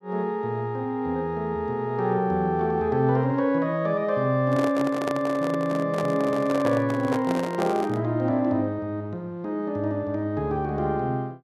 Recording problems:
microphone handling noise; from 4.5 to 8 s; peak 0 dB vs average level

